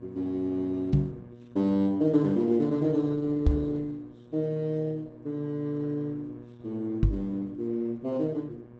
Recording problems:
lossy codec; Opus, log-spectral distance 2 dB, nothing above 7.8 kHz
electrical hum; 60 Hz, harmonics up to 1.2 kHz, SNR 20 dB
microphone bump; at 1 s, at 3.5 s and at 7 s; peak +9 dB vs average level

